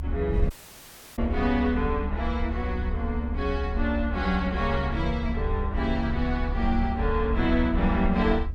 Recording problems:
rumble; below 72 Hz, SNR 4 dB
wind noise; below 140 Hz, SNR 12 dB
dropout; at 0.5 s for 0.5 s

